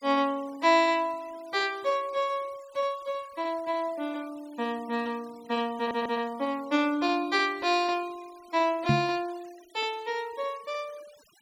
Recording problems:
denoising artefacts; signal-to-artefact ratio 24 dB
audio stuttering; at 6 s
microphone thump; at 9 s; peak +7 dB vs average level

